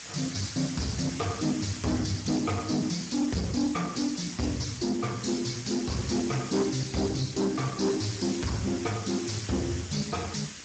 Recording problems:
codec artefacts; Speex, log-spectral distance 17 dB
distorted audio; soft clipping, signal-to-distortion ratio 6 dB
hum; 60 Hz, harmonics up to 600 Hz, SNR 24 dB
hiss; slope +2 dB per octave, SNR 11 dB

